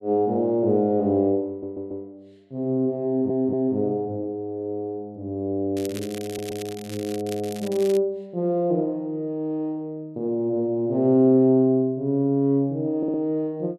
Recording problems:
stutter; 4 times, first at 1.5 s
crackle; from 6 to 8 s; loose cable, SNR 17 dB

